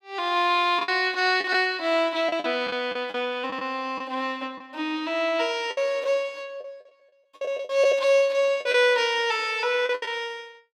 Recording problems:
packet loss; 8% of the sound replaced, filled with the last packet

